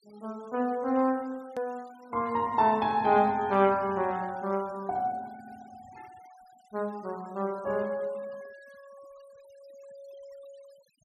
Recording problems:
denoising artefacts; signal-to-artefact ratio 27 dB
edit click; at 1.5 s

